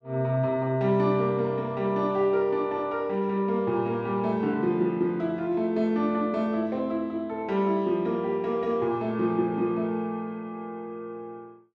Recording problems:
none

